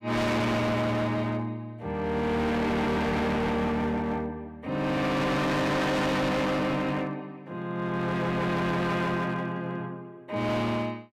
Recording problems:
distorted audio; hard clipping, signal-to-distortion ratio 6 dB

